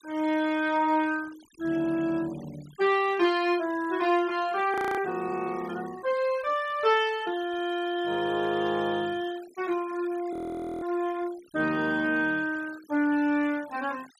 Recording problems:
noise reduction artefacts; signal-to-artefact ratio 21 dB
frozen audio; at 4.5 s and at 10 s

